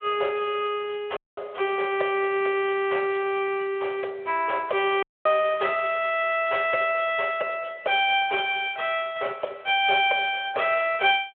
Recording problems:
telephone audio; 340 Hz to 3.4 kHz, Speex
audio cutting out; at 1 s and at 5 s

